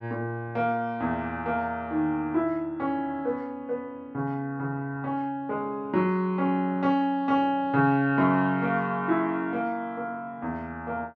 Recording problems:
none

